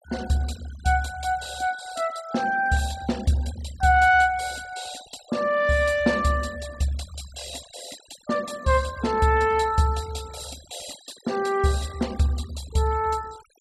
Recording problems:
noise reduction artefacts; signal-to-artefact ratio 20 dB

